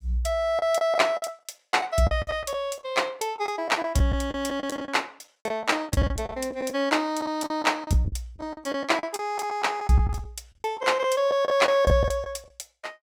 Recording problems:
packet loss; 13% of the sound replaced, filled with the last packet

